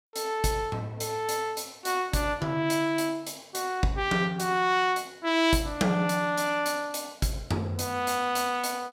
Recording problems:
none

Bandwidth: 16 kHz